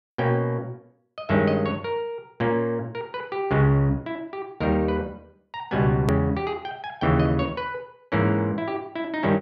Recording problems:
hard cut with a click; at 6 s

